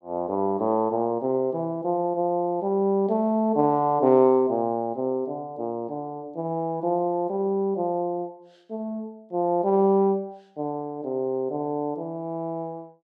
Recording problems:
none

